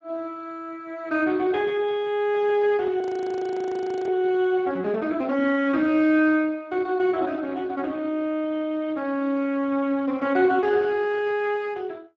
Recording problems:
codec artefacts; Speex, log-spectral distance 2 dB
audio freezing; at 3 s for 1 s

